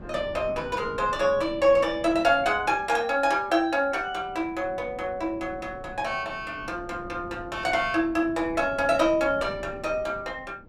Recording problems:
wind on the microphone; below 350 Hz, SNR 19 dB

